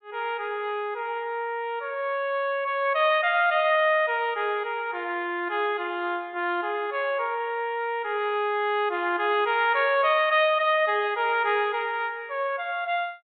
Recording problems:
treble missing; nothing above 4 kHz

